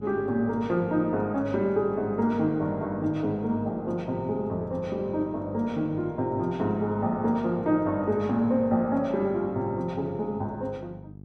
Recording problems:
hum; 50 Hz, harmonics up to 500 Hz, SNR 18 dB

